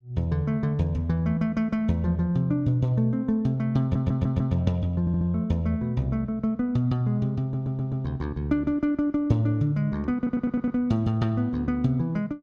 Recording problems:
audio stuttering; 4 times, first at 4 s

